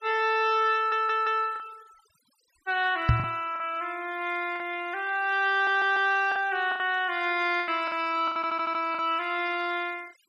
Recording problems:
denoising artefacts; signal-to-artefact ratio 23 dB
lost packets; 7% of the sound replaced, filled with the last packet
audio stuttering; at 1 s, at 5.5 s and at 8.5 s
microphone thump; at 3 s; peak +7 dB vs average level

